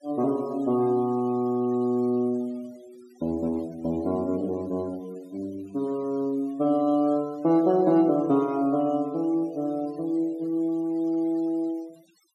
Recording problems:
denoising artefacts; signal-to-artefact ratio 27 dB

